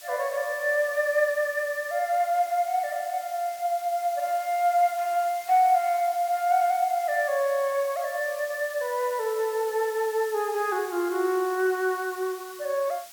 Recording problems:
hiss; slope +3 dB per octave, SNR 17 dB

